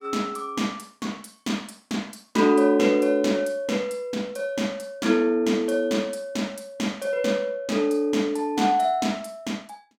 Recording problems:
none

